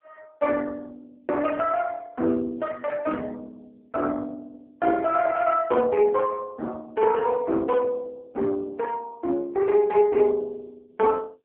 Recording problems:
phone line; 260 Hz to 3.5 kHz, AMR-NB

